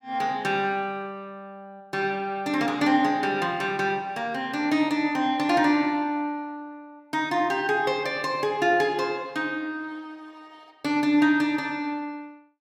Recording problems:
none

